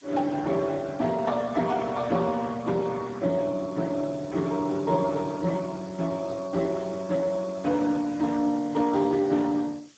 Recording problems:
lossy compression; Speex, log-spectral distance 5 dB, nothing above 7.3 kHz
background hiss; slope +1 dB per octave, SNR 27 dB
microphone handling noise; from 3.5 to 7 s; peak -11 dB vs average level

